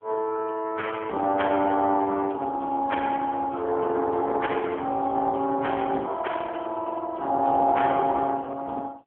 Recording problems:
telephone audio; 240 Hz to 3.3 kHz, AMR-NB

